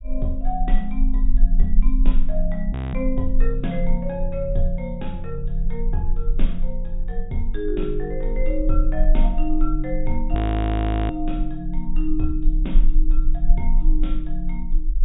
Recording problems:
treble cut off; nothing above 4 kHz
rumble; below 32 Hz, strongest tone 20 Hz, SNR -3 dB
audio freezing; at 2.5 s and at 10 s for 1 s

